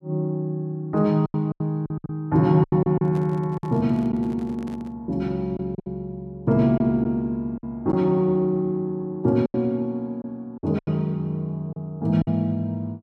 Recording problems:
lost packets; 8% of the sound replaced, filled with silence
handling noise; from 3 to 5 s; peak -11 dB vs average level

